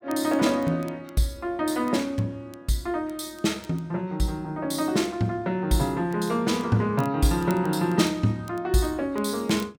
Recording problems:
crackle; vinyl, SNR 27 dB

